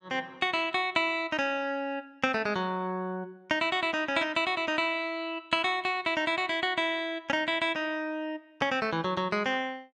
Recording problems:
none

